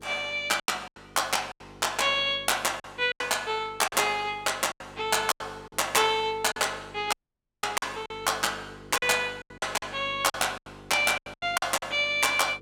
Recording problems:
hum; 50 Hz, harmonics up to 500 Hz, SNR 23 dB
lost packets; 11% of the sound replaced, filled with silence
audio cutting out; at 7 s for 0.5 s

